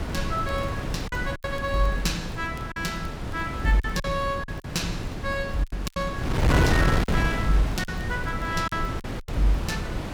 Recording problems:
wind noise; below 400 Hz, SNR 1 dB
crackle; vinyl, SNR 28 dB
lost packets; 7% of the sound replaced, filled with silence

